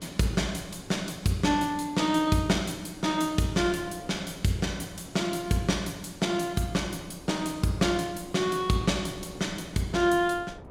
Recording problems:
wind on the microphone; below 490 Hz, SNR 21 dB

